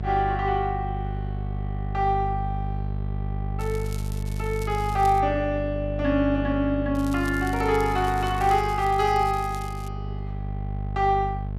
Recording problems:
hum; 50 Hz, harmonics up to 650 Hz, SNR 6 dB
crackling; from 3.5 to 5 s and from 7 to 10 s; loose cable, SNR 20 dB

